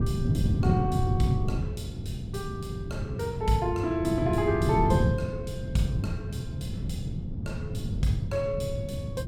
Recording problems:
wind on the microphone; below 180 Hz, SNR 0 dB

